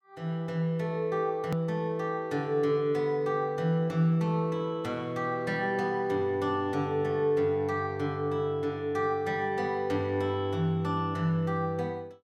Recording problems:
click at an edit; at 1.5 s

